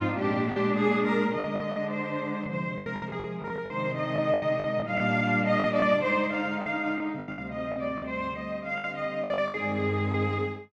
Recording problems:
lost packets; 12% of the sound replaced, filled with the last packet

